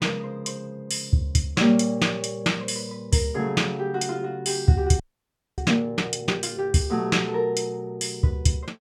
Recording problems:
frozen audio; at 5 s for 0.5 s

